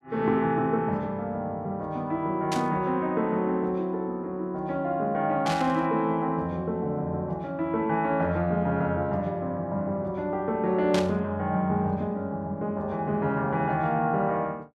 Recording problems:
burst of static; at 2.5 s, at 5.5 s and at 11 s; peak -1 dB vs average level

